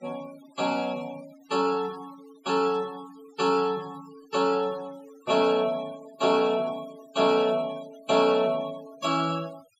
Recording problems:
noise reduction artefacts; signal-to-artefact ratio 21 dB

